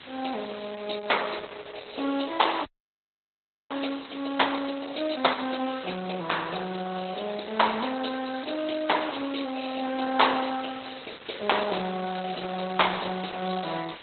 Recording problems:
lossy compression; Opus, log-spectral distance 19 dB, nothing above 4.1 kHz
background hiss; SNR 16 dB
audio freezing; at 2.5 s for 1 s

